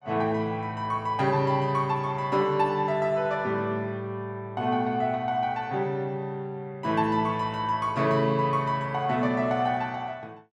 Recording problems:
none

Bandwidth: 14 kHz